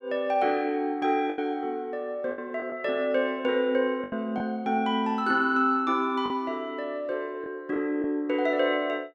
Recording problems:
packet loss; 4% of the sound replaced, filled with the last packet

